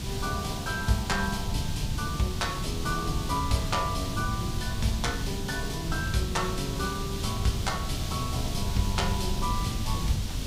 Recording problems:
background hiss; SNR 6 dB
wind noise; below 130 Hz, SNR 3 dB

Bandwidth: 15.5 kHz